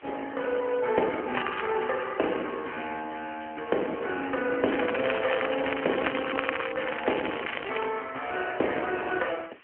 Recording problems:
phone line; 240 Hz to 3.2 kHz, AMR-NB
background hiss; SNR 24 dB
crackle; at 1.5 s and from 4.5 to 8 s; loose cable, SNR 6 dB

